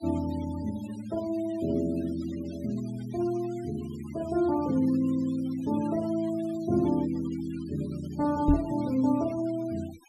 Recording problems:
noise reduction artefacts; signal-to-artefact ratio 20 dB
knock on the microphone; at 8.5 s; peak +9 dB vs average level

